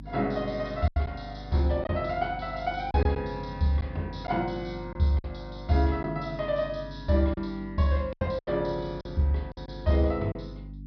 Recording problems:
low-pass filter; nothing above 5.5 kHz
mains hum; 50 Hz, harmonics up to 300 Hz, SNR 14 dB
lost packets; 6% of the sound replaced, filled with silence

